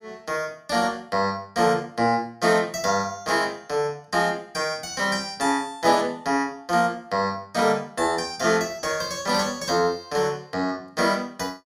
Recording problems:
none

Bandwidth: 15.5 kHz